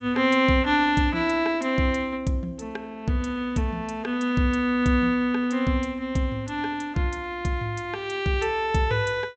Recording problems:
low-pass filter; nothing above 8 kHz

